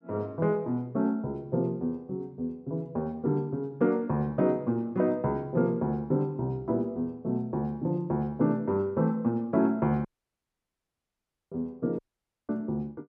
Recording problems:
audio cutting out; at 10 s for 1.5 s and at 12 s for 0.5 s

